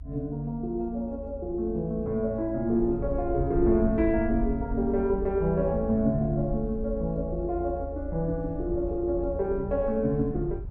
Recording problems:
rumble; below 74 Hz, SNR 10 dB

